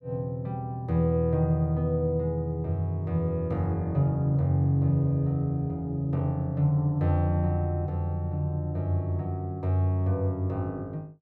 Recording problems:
none

